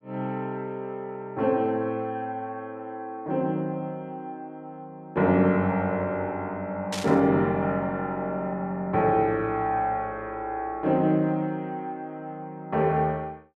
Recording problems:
burst of static; at 7 s; peak -1 dB vs average level

